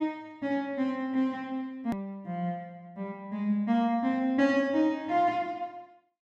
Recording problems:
hard cut with a click; at 2 s

